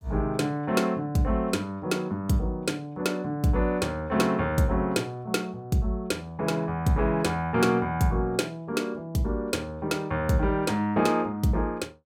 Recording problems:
none

